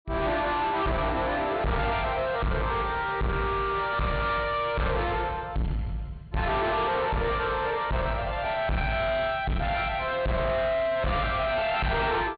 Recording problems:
treble missing; nothing above 4.4 kHz
distortion; soft clipping, signal-to-distortion ratio 6 dB

